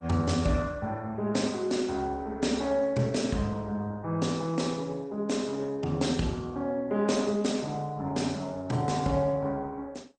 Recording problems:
codec artefacts; MP2, then Opus, log-spectral distance 3 dB, nothing above 8.5 kHz

